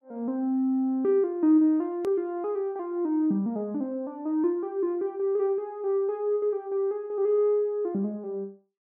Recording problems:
edit click; at 2 s

